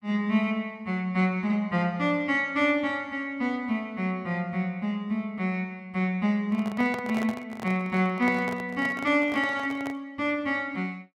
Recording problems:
handling noise; from 6.5 to 10 s; peak -5 dB vs average level

